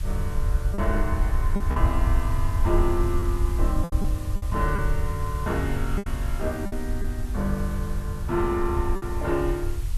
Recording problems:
hiss; slope -1 dB per octave, SNR 16 dB
rumble; below 76 Hz, SNR -2 dB
packet loss; 5% of the sound replaced, filled with repeated pitch periods

